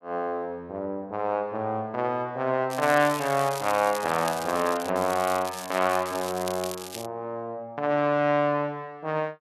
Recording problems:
crackling; from 2.5 to 5 s and from 5 to 7 s; loose cable, SNR 12 dB

